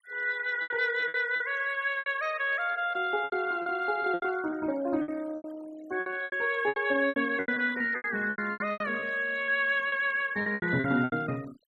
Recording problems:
denoising artefacts; signal-to-artefact ratio 19 dB
lost packets; 15% of the sound replaced, filled with repeated pitch periods

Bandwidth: 14.5 kHz